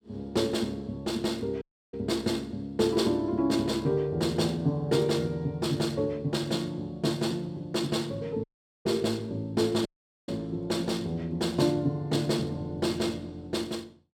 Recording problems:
dropout; at 1.5 s, at 8.5 s and at 10 s

